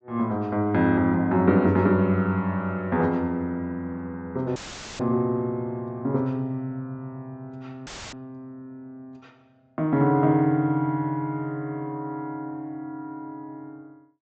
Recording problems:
low-pass filter; nothing above 8 kHz
audio cutting out; at 4.5 s and at 8 s; filled with static

